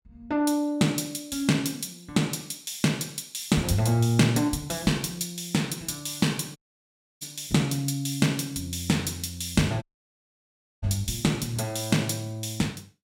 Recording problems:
dropout; at 6.5 s for 0.5 s and at 10 s for 1 s

